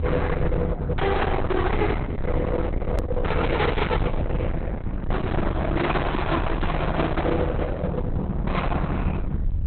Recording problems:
codec artefacts; Opus, log-spectral distance 3 dB, nothing above 3.9 kHz
distortion; hard clipping, signal-to-distortion ratio 6 dB
rumble; below 210 Hz, SNR 3 dB
click at an edit; at 3 s

